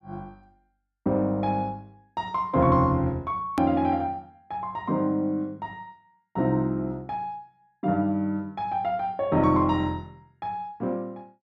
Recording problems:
hard cut with a click; at 3.5 s

